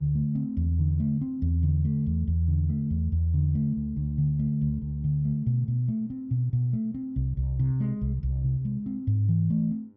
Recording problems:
electrical hum; 50 Hz, harmonics up to 1 kHz, SNR 34 dB

